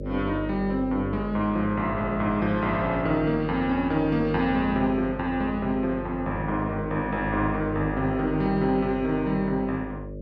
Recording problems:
mains hum; 50 Hz, harmonics up to 600 Hz, SNR 10 dB

